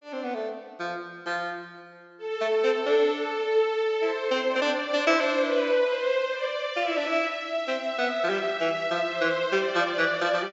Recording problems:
treble missing; nothing above 8 kHz

